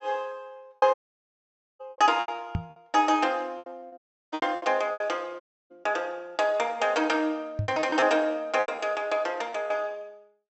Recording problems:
treble cut off; nothing above 7.9 kHz
packet loss; 12% of the sound replaced, filled with repeated pitch periods
audio cutting out; at 1 s for 1 s, at 4 s and at 5.5 s
microphone thump; at 2.5 s, at 5.5 s and at 7.5 s; peak +2 dB vs average level

